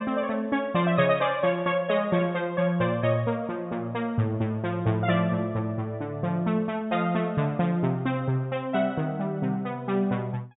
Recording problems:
low-pass filter; nothing above 4 kHz

